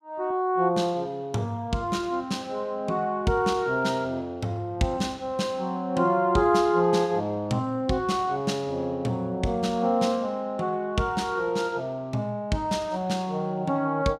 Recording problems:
none

